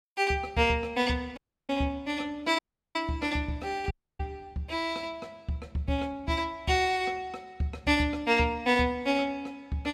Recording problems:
dropout; at 1.5 s, at 2.5 s and at 4 s

